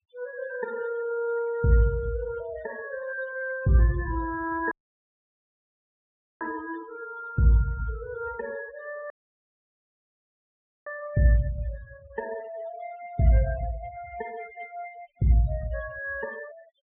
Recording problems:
low-pass filter; nothing above 4 kHz
denoising artefacts; signal-to-artefact ratio 18 dB
audio cutting out; at 4.5 s for 1.5 s and at 9 s for 2 s

